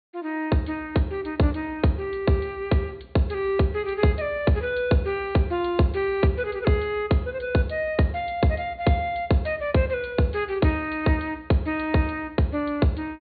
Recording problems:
treble cut off; nothing above 4.5 kHz

